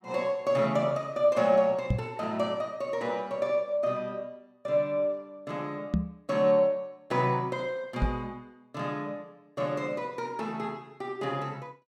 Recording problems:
knock on the microphone; at 2 s, at 6 s and at 8 s; peak +5 dB vs average level

